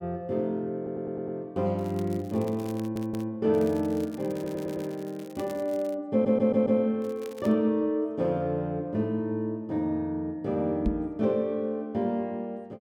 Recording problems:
stutter; 4 times, first at 1 s
crackling; from 2 to 3 s, from 3.5 to 6 s and at 7 s; loose cable, SNR 23 dB
microphone thump; at 11 s; peak +4 dB vs average level

